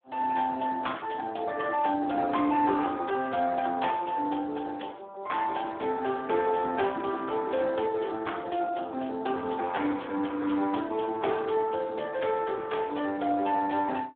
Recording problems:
telephone audio; 240 Hz to 3.6 kHz, Speex

